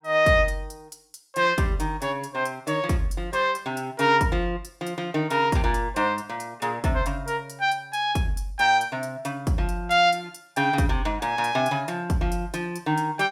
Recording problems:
none

